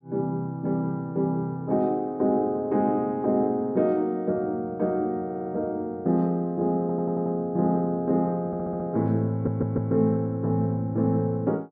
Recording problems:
stutter; 4 times, first at 5.5 s

